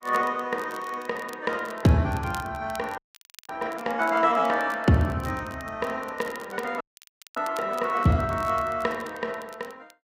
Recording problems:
codec artefacts; Opus, log-spectral distance 2 dB, nothing above 15.6 kHz
crackle; vinyl, SNR 22 dB
frozen audio; at 3 s for 0.5 s and at 7 s for 0.5 s

